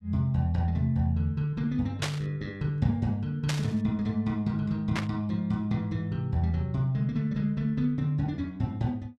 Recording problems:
burst of static; at 2 s, at 3.5 s and at 5 s; peak +2 dB vs average level

